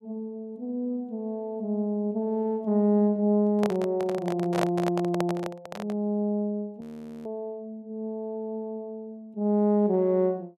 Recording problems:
microphone handling noise; from 3.5 to 6 s; peak +4 dB vs average level
audio freezing; at 7 s

